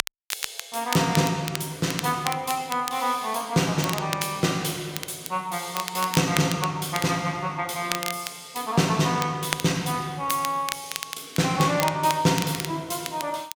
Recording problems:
crackle; vinyl, SNR 8 dB

